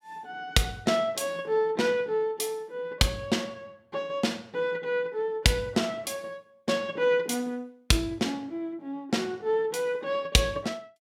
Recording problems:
none

